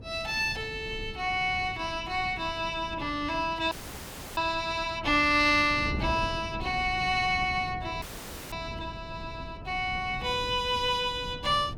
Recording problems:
wind on the microphone; below 230 Hz, SNR 14 dB
audio freezing; at 3.5 s for 0.5 s and at 8 s for 0.5 s

